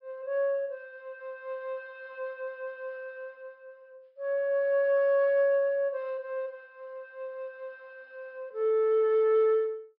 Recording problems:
treble missing; nothing above 5.5 kHz

